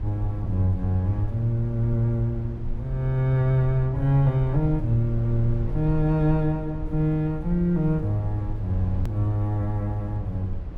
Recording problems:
low-frequency rumble; below 72 Hz, SNR 10 dB
hard cut with a click; at 9 s

